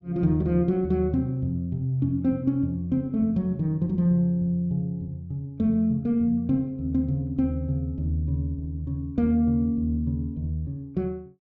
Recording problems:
low-pass filter; nothing above 7.7 kHz

